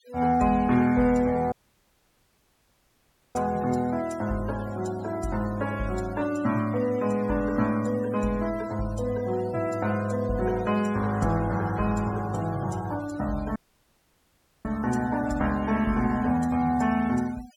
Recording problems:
denoising artefacts; signal-to-artefact ratio 19 dB
dropout; at 1.5 s for 2 s and at 14 s for 1 s

